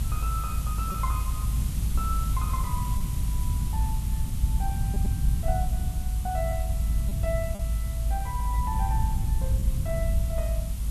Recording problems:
hiss; slope -1 dB per octave, SNR 6 dB
low-frequency rumble; below 92 Hz, strongest tone 54 Hz, SNR -8 dB
packet loss; 1.8% of the sound replaced, filled with repeated pitch periods

